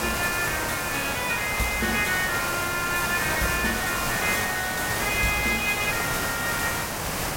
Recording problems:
background hiss; SNR 1 dB

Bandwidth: 16.5 kHz